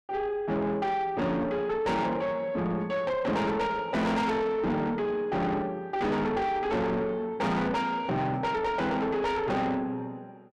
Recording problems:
distortion; soft clipping, signal-to-distortion ratio 7 dB

